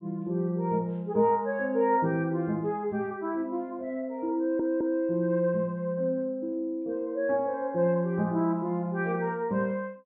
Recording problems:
treble missing; nothing above 4 kHz
audio stuttering; at 4.5 s

